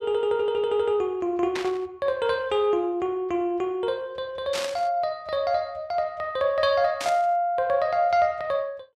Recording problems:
static burst; at 1.5 s, at 4.5 s and at 7 s; peak -2 dB vs average level

